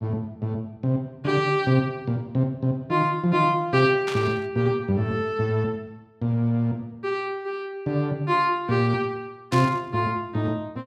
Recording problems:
burst of static; at 4 s and at 9.5 s; peak -4 dB vs average level

